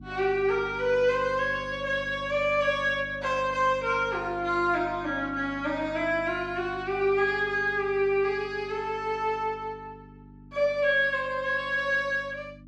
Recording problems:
hum; 50 Hz, harmonics up to 300 Hz, SNR 19 dB

